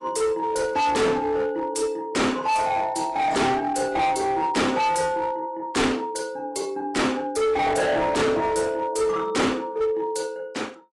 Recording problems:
lossy compression; AAC, log-spectral distance 3 dB, nothing above 10.7 kHz
distorted audio; hard clipping, uneven, signal-to-distortion ratio 6 dB

